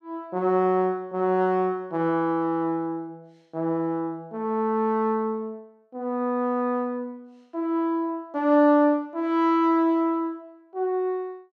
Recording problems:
none

